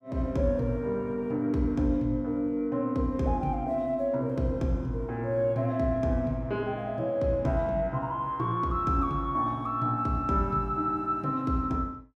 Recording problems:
none

